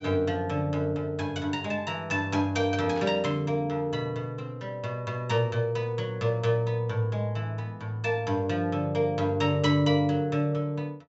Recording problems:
treble missing; nothing above 8 kHz
static burst; at 3 s; peak -12 dB vs average level

